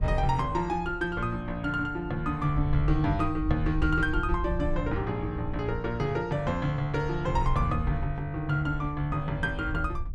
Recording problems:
wind noise; below 72 Hz, SNR 7 dB

